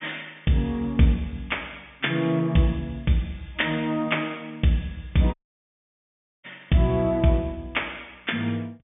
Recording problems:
low-pass filter; nothing above 3.6 kHz
audio cutting out; at 5.5 s for 1 s

